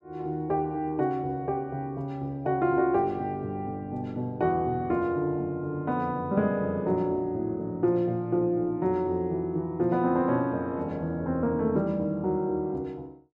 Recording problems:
none

